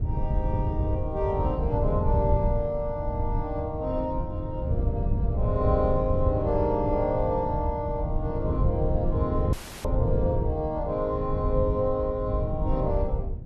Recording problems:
wind on the microphone; below 120 Hz, SNR 0 dB
audio cutting out; at 9.5 s

